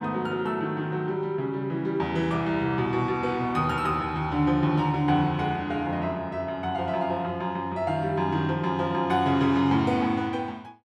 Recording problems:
none

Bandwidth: 14 kHz